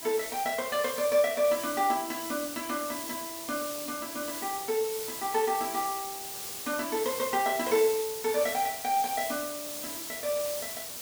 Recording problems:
background hiss; SNR 6 dB

